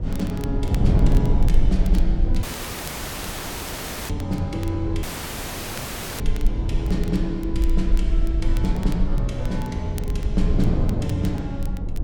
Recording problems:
low-frequency rumble; below 46 Hz, SNR 0 dB
wind noise; below 180 Hz, SNR 0 dB
crackle; vinyl, SNR 18 dB
dropout; at 2.5 s for 1.5 s and at 5 s for 1 s

